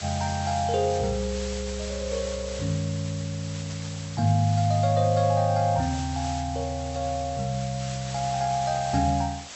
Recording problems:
treble missing; nothing above 7.9 kHz
background hiss; slope 0 dB per octave, SNR 12 dB

